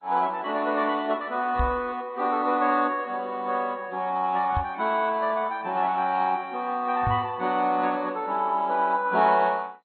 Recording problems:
codec artefacts; AAC, then MP2, log-spectral distance 3 dB, nothing above 4.2 kHz
microphone thump; at 1.5 s, at 4.5 s and at 7 s; peak +1 dB vs average level

